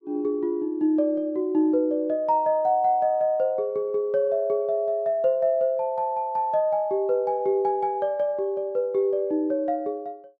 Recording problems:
none

